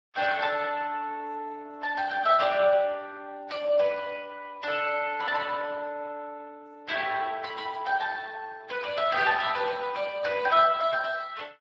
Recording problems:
lossy compression; Vorbis, then Speex, log-spectral distance 4 dB

